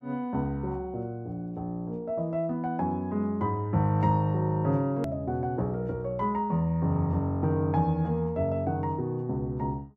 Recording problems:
edit click; at 5 s

